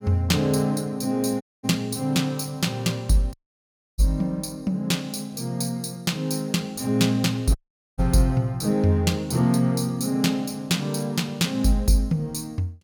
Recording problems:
audio cutting out; at 1.5 s, at 3.5 s for 0.5 s and at 7.5 s

